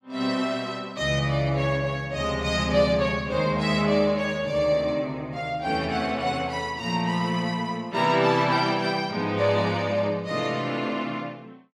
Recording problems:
none

